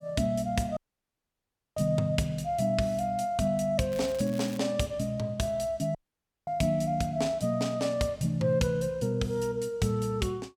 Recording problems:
dropout; at 1 s for 1 s and at 6 s for 0.5 s
crackling; at 4 s; loose cable, SNR 19 dB

